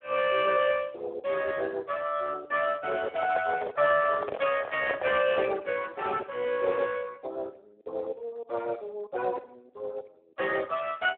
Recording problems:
telephone audio; 340 Hz to 3.3 kHz, Speex
handling noise; from 3 to 5.5 s; peak +2 dB vs average level

